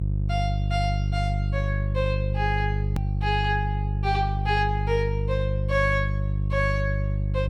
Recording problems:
hum; 50 Hz, harmonics up to 350 Hz, SNR -1 dB
hard cut with a click; at 3 s

